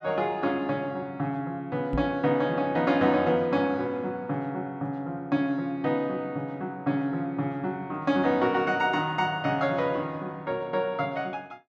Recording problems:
microphone bump; at 2 s; peak 0 dB vs average level

